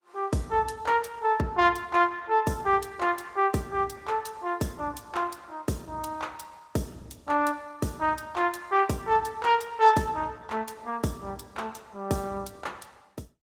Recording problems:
codec artefacts; Opus, log-spectral distance 4 dB, nothing above 19.5 kHz

